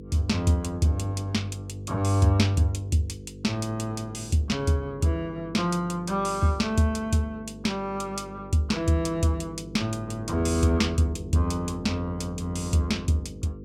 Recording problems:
electrical hum; 50 Hz, harmonics up to 500 Hz, SNR 15 dB

